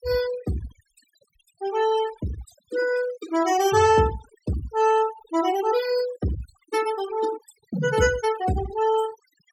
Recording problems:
noise reduction artefacts; signal-to-artefact ratio 13 dB

